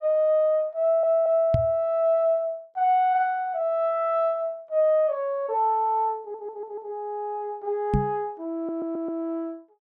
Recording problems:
stutter; at 1 s, at 6 s and at 8.5 s
microphone bump; at 1.5 s and at 8 s; peak +4 dB vs average level

